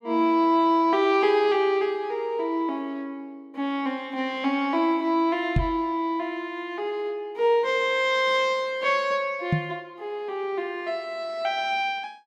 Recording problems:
microphone thump; at 5.5 s and at 9.5 s; peak +5 dB vs average level

